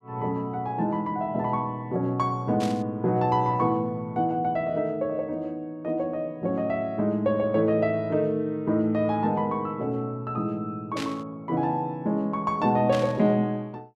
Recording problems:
static burst; at 2.5 s, at 11 s and at 13 s; peak -5 dB vs average level

